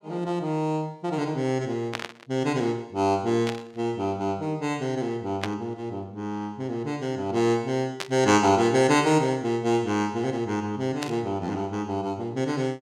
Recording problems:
static burst; 5 times, first at 2 s; peak 0 dB vs average level

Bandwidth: 17 kHz